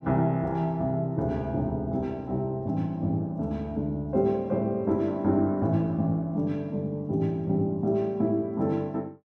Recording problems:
none

